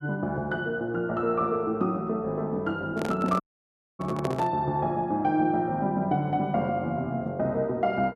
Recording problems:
microphone handling noise; from 3 to 4.5 s; peak 0 dB vs average level
audio cutting out; at 3.5 s for 0.5 s

